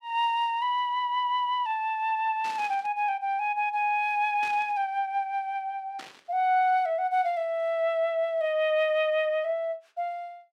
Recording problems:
burst of static; at 2.5 s, at 4.5 s and at 6 s; peak -11 dB vs average level

